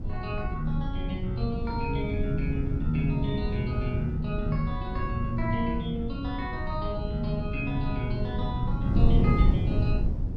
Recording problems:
wind noise; below 140 Hz, SNR -2 dB

